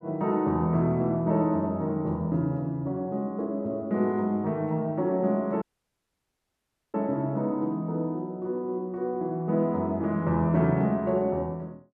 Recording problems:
audio cutting out; at 5.5 s for 1.5 s

